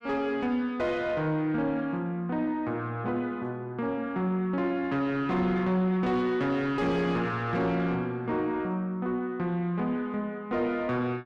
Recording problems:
distortion; soft clipping, signal-to-distortion ratio 10 dB

